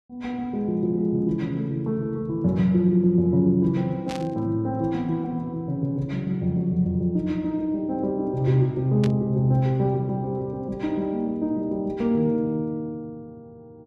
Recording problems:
burst of static; at 4 s and at 9 s; peak -8 dB vs average level

